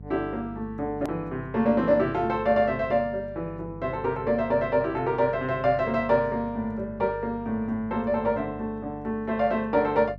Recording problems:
hum; 50 Hz, harmonics up to 500 Hz, SNR 17 dB
click at an edit; at 1 s

